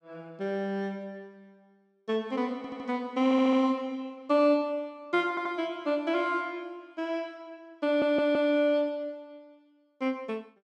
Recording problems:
stutter; 4 times, first at 2.5 s

